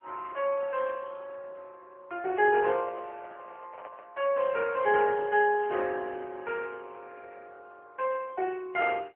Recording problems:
telephone audio; 320 Hz to 2.9 kHz, AMR-NB
handling noise; from 2.5 to 4 s; peak -8 dB vs average level

